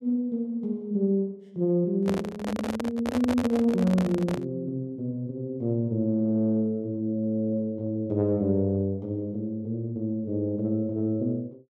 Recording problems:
handling noise; from 2 to 4.5 s; peak 0 dB vs average level

